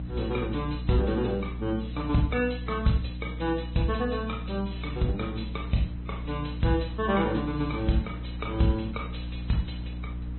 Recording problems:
low-pass filter; nothing above 4.1 kHz
codec artefacts; Vorbis, log-spectral distance 3 dB
hum; 60 Hz, harmonics up to 300 Hz, SNR 7 dB
wind on the microphone; below 460 Hz, SNR 23 dB

